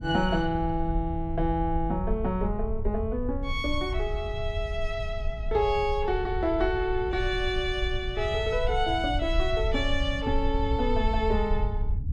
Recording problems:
rumble; below 68 Hz, SNR 5 dB

